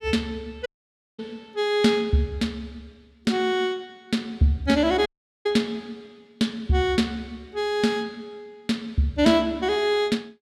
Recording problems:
dropout; at 0.5 s for 0.5 s and at 5 s

